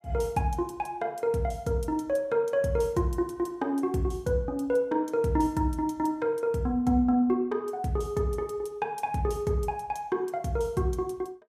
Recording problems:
none

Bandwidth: 15.5 kHz